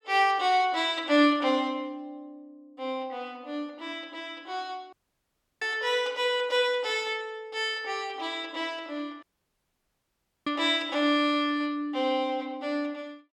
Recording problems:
audio cutting out; at 5 s for 0.5 s and at 9 s for 1 s

